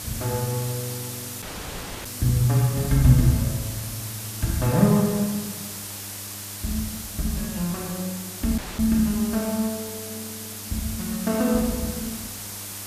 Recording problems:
hum; 50 Hz, harmonics up to 1 kHz, SNR 20 dB
background hiss; slope 0 dB per octave, SNR 9 dB
dropout; at 1.5 s for 0.5 s and at 8.5 s

